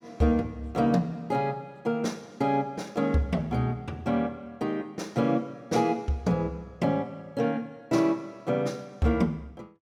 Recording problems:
none

